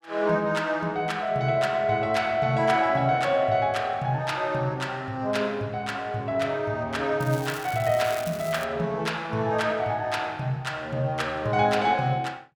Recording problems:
crackling; from 7 to 8.5 s; loose cable, SNR 16 dB

